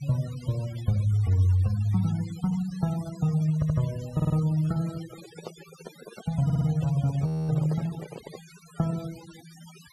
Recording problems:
denoising artefacts; signal-to-artefact ratio 20 dB
audio stuttering; at 3.5 s, at 4 s and at 6.5 s
handling noise; from 5 to 8.5 s; peak -8 dB vs average level
frozen audio; at 7.5 s

